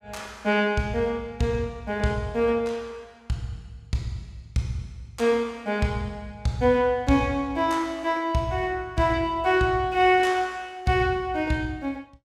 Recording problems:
none

